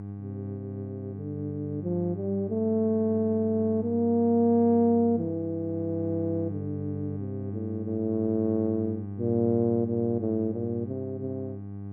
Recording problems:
electrical hum; 50 Hz, harmonics up to 800 Hz, SNR 10 dB

